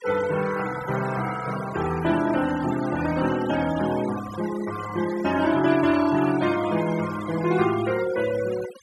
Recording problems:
denoising artefacts; signal-to-artefact ratio 13 dB

